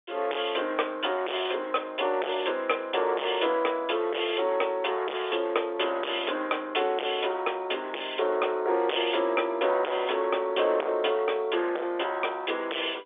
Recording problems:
phone line; 340 Hz to 3.6 kHz, G.711
distorted audio; hard clipping, signal-to-distortion ratio 8 dB

